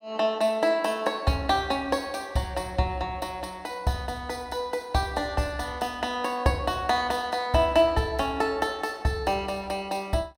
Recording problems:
none

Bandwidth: 16.5 kHz